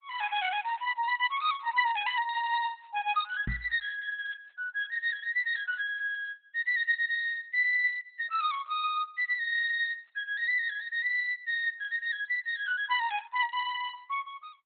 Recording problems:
lossy compression; Opus, log-spectral distance 3 dB, nothing above 3.8 kHz
microphone thump; at 3.5 s; peak -2 dB vs average level

